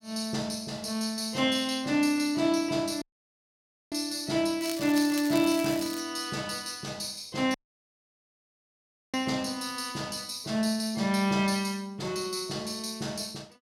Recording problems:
dropout; at 3 s for 1 s and at 7.5 s for 1.5 s
crackle; from 4.5 to 6 s; loose cable, SNR 11 dB

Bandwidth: 16 kHz